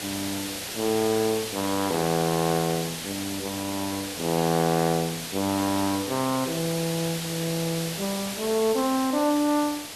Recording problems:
hiss; SNR 6 dB

